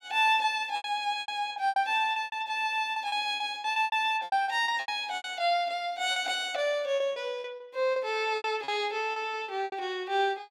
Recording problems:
packet loss; 15% of the sound replaced, filled with repeated pitch periods

